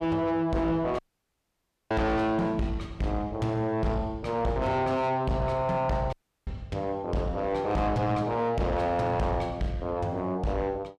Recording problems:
distorted audio; soft clipping, signal-to-distortion ratio 6 dB
audio cutting out; at 1 s for 1 s and at 6 s

